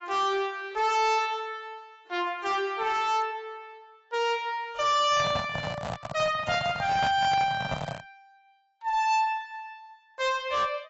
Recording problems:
codec artefacts; AAC, log-spectral distance 2 dB, nothing above 6.5 kHz
distortion; hard clipping, signal-to-distortion ratio 8 dB
handling noise; from 5 to 8 s; peak 0 dB vs average level

